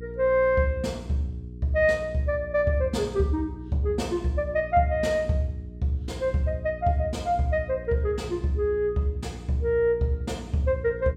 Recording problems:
hum; 60 Hz, harmonics up to 420 Hz, SNR 14 dB

